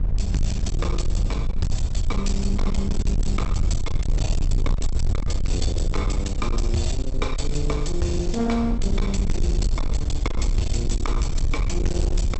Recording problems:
treble missing; nothing above 8 kHz
distorted audio; hard clipping, signal-to-distortion ratio 8 dB
low-frequency rumble; below 70 Hz, SNR -2 dB

